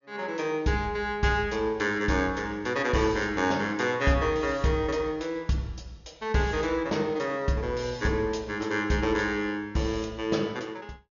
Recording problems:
treble cut off; nothing above 7 kHz

